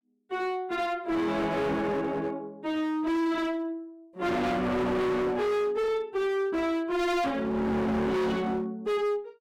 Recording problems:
distorted audio; hard clipping, uneven, signal-to-distortion ratio 6 dB

